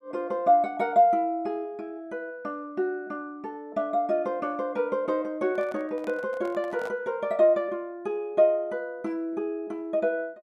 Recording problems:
handling noise; from 5.5 to 7 s; peak -9 dB vs average level

